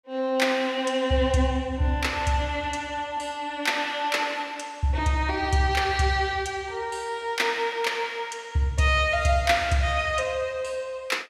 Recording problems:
none

